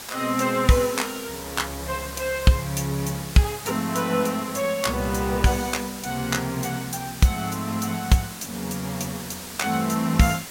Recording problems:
hiss; slope -1 dB per octave, SNR 11 dB

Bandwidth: 16.5 kHz